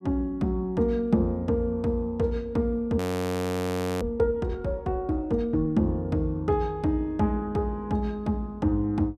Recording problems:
frozen audio; at 3 s for 1 s

